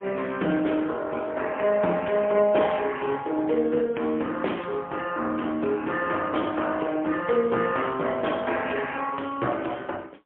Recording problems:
phone line; 280 Hz to 3.3 kHz, AMR-NB, then MP3

